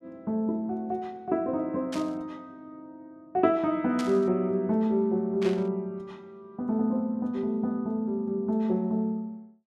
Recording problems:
burst of static; at 2 s, at 4 s and at 5.5 s; peak -6 dB vs average level

